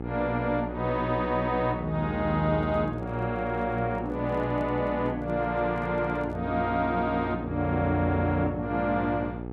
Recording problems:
hum; 60 Hz, harmonics up to 1.3 kHz, SNR 8 dB
microphone handling noise; from 2.5 to 6.5 s; peak -10 dB vs average level

